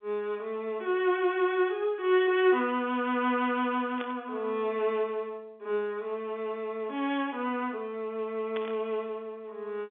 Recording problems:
telephone audio; 260 Hz to 3.9 kHz, G.711
static burst; at 4 s and at 8.5 s; peak -7 dB vs average level

